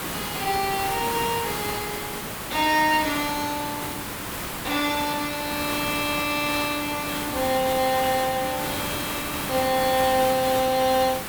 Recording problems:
background hiss; slope -3 dB per octave, SNR 5 dB

